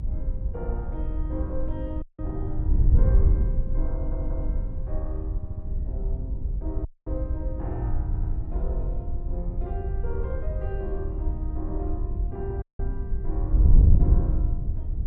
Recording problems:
low-frequency rumble; below 54 Hz, SNR -1 dB
wind on the microphone; below 74 Hz, SNR -10 dB
audio cutting out; at 2 s, at 7 s and at 13 s
audio stuttering; at 4 s, at 5.5 s and at 8 s

